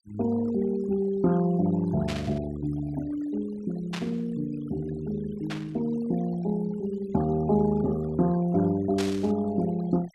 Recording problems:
noise reduction artefacts; signal-to-artefact ratio 18 dB
static burst; 4 times, first at 2 s; peak -3 dB vs average level

